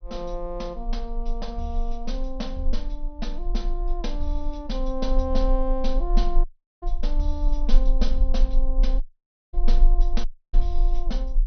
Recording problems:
low-pass filter; nothing above 6.1 kHz
low-frequency rumble; below 34 Hz, strongest tone 22 Hz, SNR -5 dB
dropout; at 6.5 s, at 9 s for 0.5 s and at 10 s

